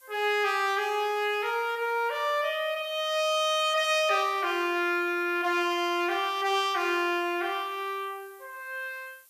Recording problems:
hiss; slope +2 dB per octave, SNR 27 dB

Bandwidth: 14.5 kHz